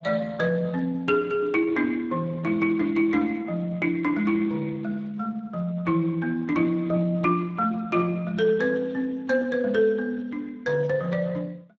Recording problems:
lossy codec; Speex, log-spectral distance 3 dB, nothing above 7.3 kHz

